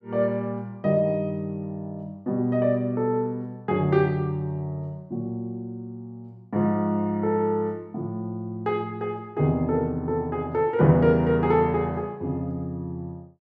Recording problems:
none

